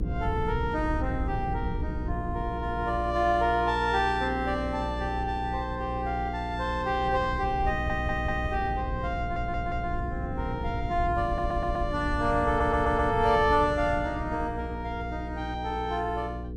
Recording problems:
electrical hum; 60 Hz, harmonics up to 480 Hz, SNR 8 dB
wind noise; below 120 Hz, SNR 9 dB
stutter; 4 times, first at 7.5 s

